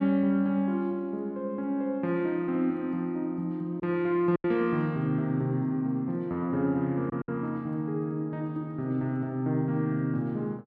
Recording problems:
packet loss; 1.7% of the sound replaced, filled with silence

